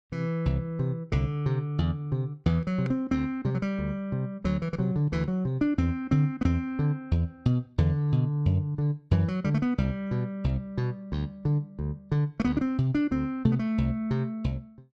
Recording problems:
none

